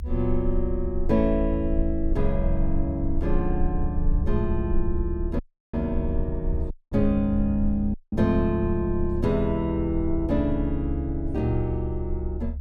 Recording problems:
rumble; below 70 Hz, strongest tone 18 Hz, SNR 5 dB
wind noise; below 92 Hz, SNR 11 dB
dropout; at 5.5 s, at 6.5 s and at 8 s

